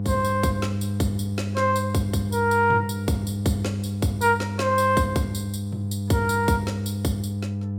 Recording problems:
hum; 50 Hz, harmonics up to 500 Hz, SNR 4 dB

